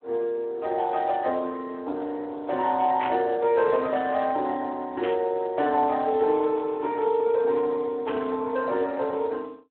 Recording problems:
phone line; 260 Hz to 3.7 kHz, Speex
burst of static; at 3 s, at 5 s and at 8 s; peak -5 dB vs average level

